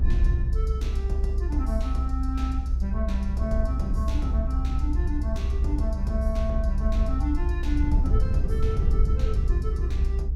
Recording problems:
low-frequency rumble; below 64 Hz, SNR -7 dB

